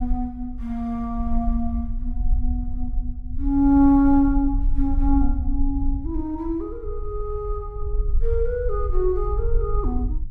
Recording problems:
low-frequency rumble; below 50 Hz, SNR 5 dB

